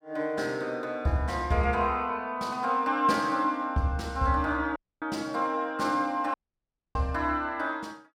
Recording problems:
dropout; at 5 s and at 6.5 s for 0.5 s

